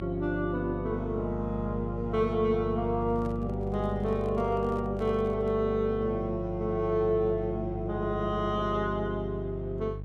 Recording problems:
hum; 50 Hz, harmonics up to 500 Hz, SNR 8 dB
handling noise; from 3 to 5.5 s; peak -11 dB vs average level

